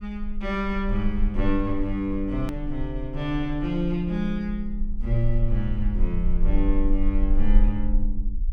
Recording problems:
rumble; below 36 Hz, strongest tone 20 Hz, SNR 2 dB
edit click; at 2.5 s

